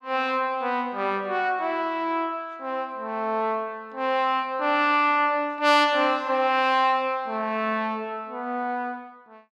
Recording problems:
none

